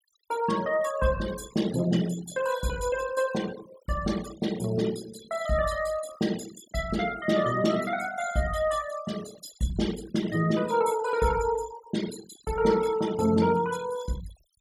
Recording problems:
denoising artefacts; signal-to-artefact ratio 15 dB

